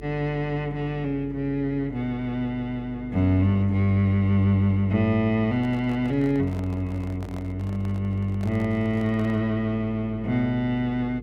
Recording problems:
hum; 50 Hz, harmonics up to 450 Hz, SNR 17 dB
microphone handling noise; from 5.5 to 9.5 s; peak -12 dB vs average level

